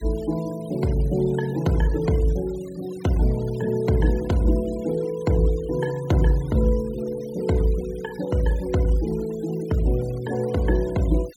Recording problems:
denoising artefacts; signal-to-artefact ratio 22 dB

